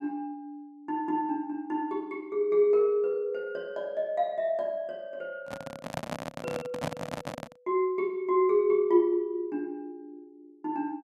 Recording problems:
microphone handling noise; from 5.5 to 7.5 s; peak 0 dB vs average level

